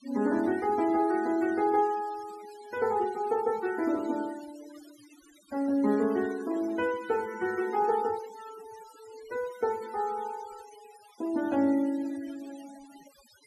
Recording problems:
denoising artefacts; signal-to-artefact ratio 20 dB

